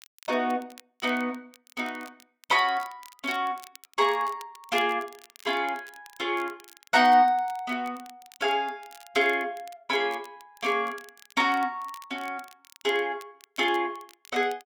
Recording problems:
crackle; vinyl, SNR 24 dB

